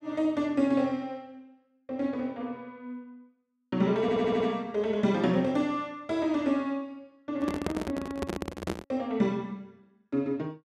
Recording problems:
audio stuttering; at 4 s
handling noise; from 7.5 to 9 s; peak +2 dB vs average level

